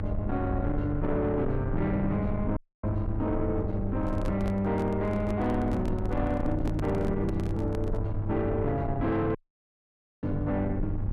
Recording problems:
distortion; soft clipping, signal-to-distortion ratio 11 dB
hum; 50 Hz, harmonics up to 800 Hz, SNR 5 dB
rumble; below 100 Hz, SNR 6 dB
audio cutting out; at 2.5 s and at 9.5 s for 1 s
microphone handling noise; from 4 to 8 s; peak -2 dB vs average level

